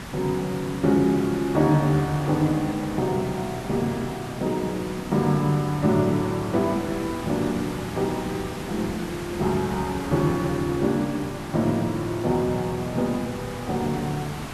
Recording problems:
hiss; slope -4 dB per octave, SNR 10 dB

